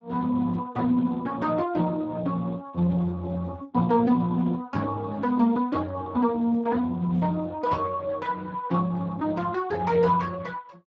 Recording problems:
codec artefacts; Speex, log-spectral distance 3 dB

